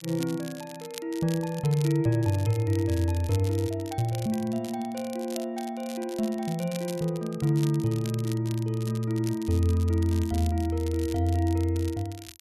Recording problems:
crackle; vinyl, SNR 17 dB

